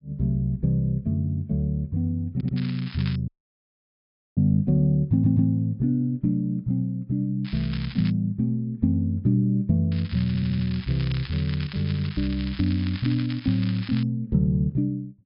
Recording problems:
treble missing; nothing above 5.2 kHz
stutter; at 2.5 s, at 5 s and at 10 s
crackle; at 2.5 s, at 7.5 s and from 10 to 14 s; loose cable, SNR 16 dB
dropout; at 3.5 s for 1 s

